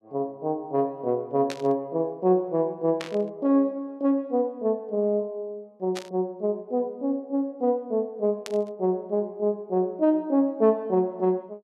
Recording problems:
burst of static; 4 times, first at 1.5 s; peak -5 dB vs average level

